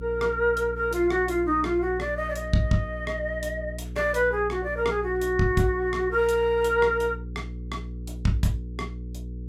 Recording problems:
electrical hum; 60 Hz, harmonics up to 480 Hz, SNR 11 dB

